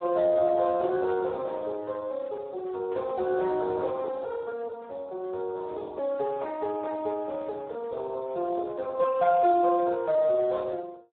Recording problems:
telephone audio; 320 Hz to 2.1 kHz, Speex
burst of static; at 1 s and at 3 s; peak -20 dB vs average level

